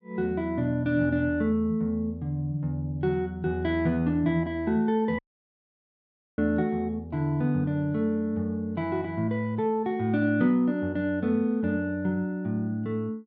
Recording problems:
dropout; at 5 s for 1 s

